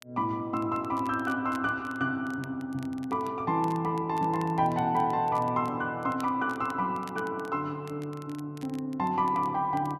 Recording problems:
crackle; vinyl, SNR 25 dB

